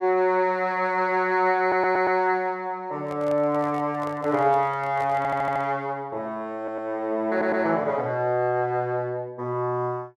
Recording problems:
stutter; 4 times, first at 1.5 s
microphone handling noise; from 3 to 6 s; peak -11 dB vs average level

